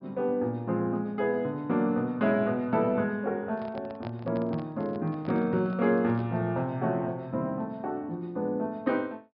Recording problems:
low-pass filter; nothing above 5.5 kHz
microphone handling noise; from 3.5 to 6.5 s; peak -8 dB vs average level

